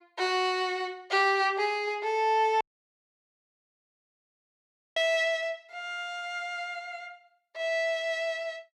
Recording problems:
dropout; at 2.5 s for 2.5 s

